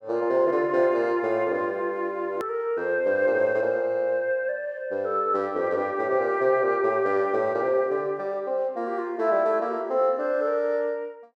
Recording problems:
edit click; at 2.5 s

